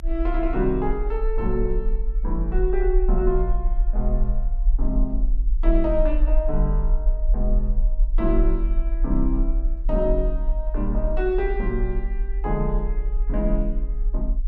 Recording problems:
low-frequency rumble; below 44 Hz, strongest tone 30 Hz, SNR -2 dB

